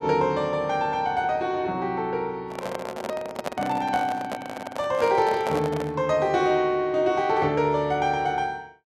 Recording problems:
handling noise; from 2.5 to 6 s; peak 0 dB vs average level

